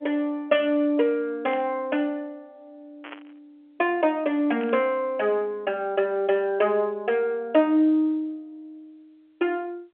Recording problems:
phone line; 260 Hz to 3.3 kHz, G.711
static burst; at 1.5 s, at 3 s and at 4.5 s; peak -11 dB vs average level

